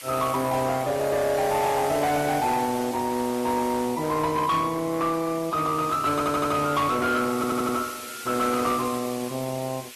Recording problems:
lossy compression; Opus, log-spectral distance 7 dB, nothing above 13.1 kHz
distorted audio; hard clipping, signal-to-distortion ratio 12 dB
hiss; SNR 15 dB
stutter; at 6 s and at 7.5 s

